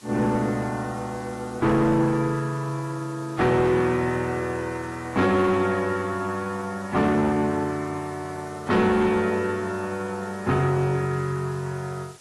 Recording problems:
codec artefacts; AAC, log-spectral distance 4 dB
distorted audio; soft clipping, signal-to-distortion ratio 11 dB
hiss; slope -1 dB per octave, SNR 23 dB

